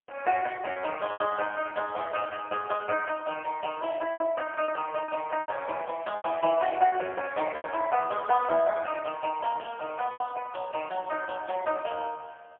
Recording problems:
phone line; 340 Hz to 3.1 kHz, AMR-NB, then MP3
lost packets; 5% of the sound replaced, filled with repeated pitch periods

